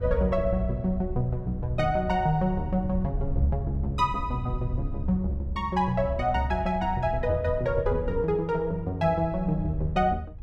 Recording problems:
wind noise; below 96 Hz, SNR 8 dB

